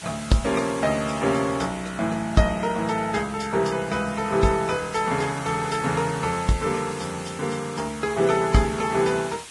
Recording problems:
lossy compression; Vorbis, log-spectral distance 9 dB, nothing above 10.7 kHz
hiss; slope +1 dB per octave, SNR 15 dB

